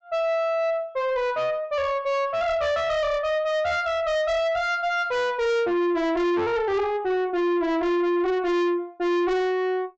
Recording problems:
treble cut off; nothing above 8 kHz
distorted audio; soft clipping, signal-to-distortion ratio 7 dB

